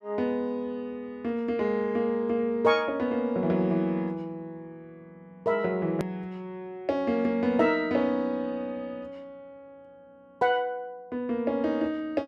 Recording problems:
click at an edit; at 6 s

